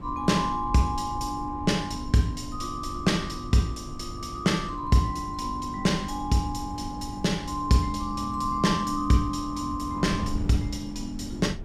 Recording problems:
wind noise; below 160 Hz, SNR 12 dB

